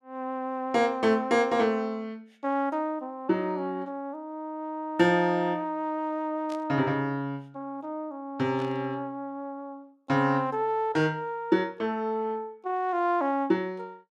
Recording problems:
static burst; at 6.5 s and at 8.5 s; peak -13 dB vs average level

